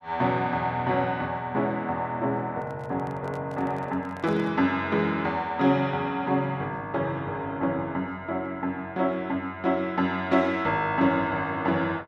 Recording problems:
handling noise; from 2.5 to 4.5 s; peak -10 dB vs average level

